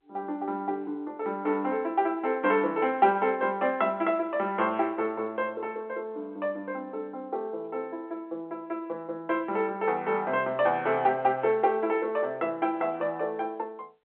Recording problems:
phone line; 260 Hz to 3.6 kHz, G.711

